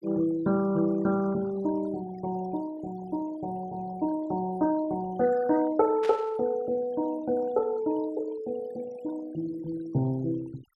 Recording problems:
noise reduction artefacts; signal-to-artefact ratio 19 dB
static burst; at 6 s; peak -7 dB vs average level

